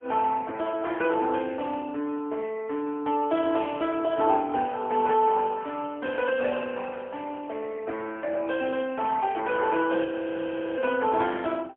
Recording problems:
phone line; 240 Hz to 3.5 kHz, AMR-NB, then MP3
frozen audio; at 10 s for 0.5 s

